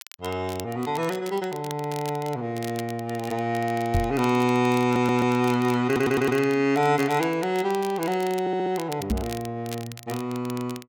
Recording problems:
crackling; vinyl, SNR 17 dB
microphone bump; at 4 s and at 9 s; peak +3 dB vs average level
stutter; at 5 s, at 6 s and at 8.5 s

